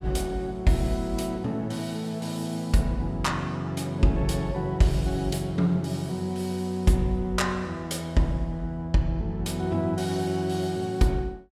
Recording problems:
none

